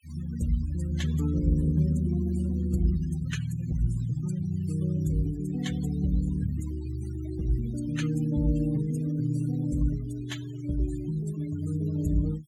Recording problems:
denoising artefacts; signal-to-artefact ratio 17 dB

